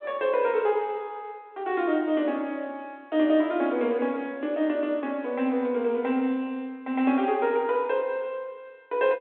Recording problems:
telephone audio; 240 Hz to 3.9 kHz, G.726

